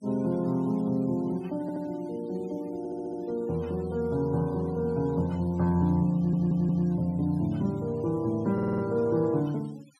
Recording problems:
noise reduction artefacts; signal-to-artefact ratio 28 dB
stutter; 4 times, first at 1.5 s

